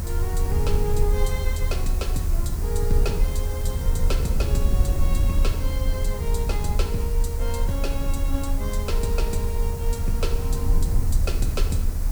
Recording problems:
hiss; SNR 8 dB
low-frequency rumble; below 78 Hz, SNR -6 dB

